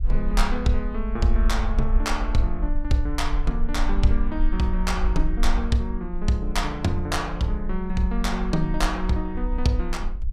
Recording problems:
low-frequency rumble; below 42 Hz, strongest tone 20 Hz, SNR 2 dB

